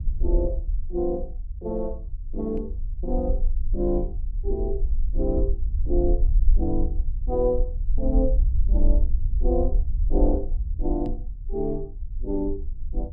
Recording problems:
low-frequency rumble; below 48 Hz, SNR -1 dB
microphone thump; at 2.5 s and at 11 s; peak -1 dB vs average level

